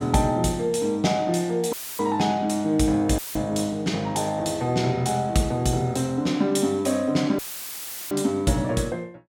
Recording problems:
audio cutting out; at 1.5 s, at 3 s and at 7.5 s for 0.5 s; filled with static

